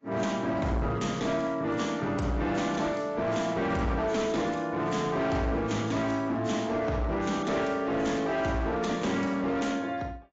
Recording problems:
lossy codec; AAC, log-spectral distance 3 dB, nothing above 7.3 kHz
distortion; hard clipping, signal-to-distortion ratio 11 dB

